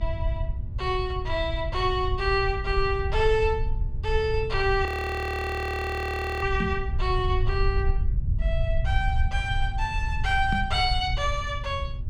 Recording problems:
electrical hum; 60 Hz, harmonics up to 600 Hz, SNR 17 dB
rumble; below 78 Hz, SNR 3 dB
frozen audio; at 5 s for 1.5 s
knock on the microphone; at 6.5 s and at 11 s; peak +1 dB vs average level

